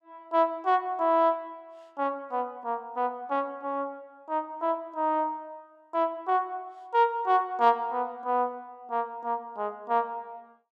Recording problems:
none

